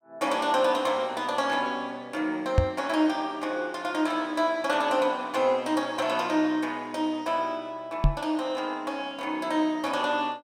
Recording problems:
knock on the microphone; at 2.5 s and at 8 s; peak +9 dB vs average level

